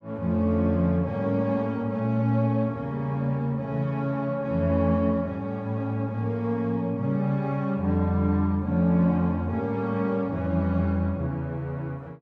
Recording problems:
none

